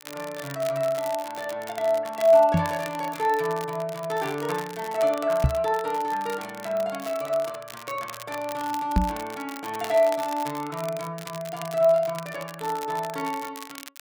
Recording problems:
crackling; vinyl, SNR 15 dB
microphone bump; at 2.5 s, at 5.5 s and at 9 s; peak +9 dB vs average level

